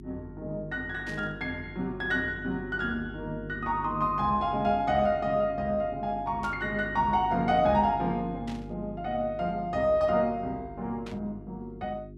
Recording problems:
hum; 50 Hz, harmonics up to 400 Hz, SNR 14 dB
static burst; 4 times, first at 1 s; peak -12 dB vs average level

